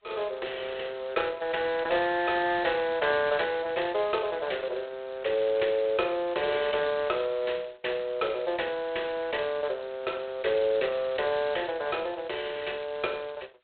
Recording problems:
phone line; 320 Hz to 3.6 kHz, G.726

